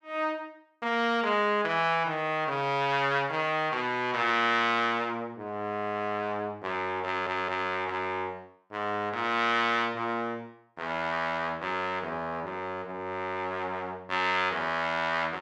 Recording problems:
audio stuttering; at 7 s

